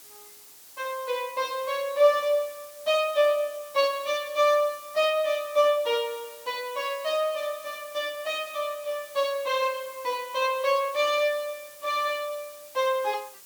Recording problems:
hiss; slope +1 dB per octave, SNR 19 dB

